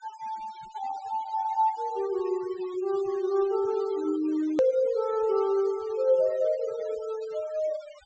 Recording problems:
low-pass filter; nothing above 8 kHz
denoising artefacts; signal-to-artefact ratio 22 dB
hard cut with a click; at 4.5 s

